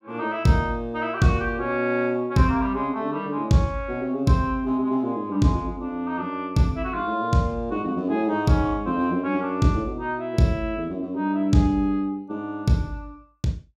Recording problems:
none

